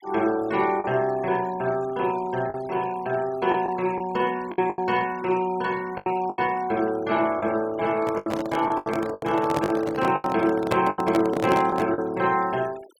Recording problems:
denoising artefacts; signal-to-artefact ratio 20 dB
packet loss; 8% of the sound replaced, filled with the last packet
handling noise; from 8 to 12 s; peak +2 dB vs average level

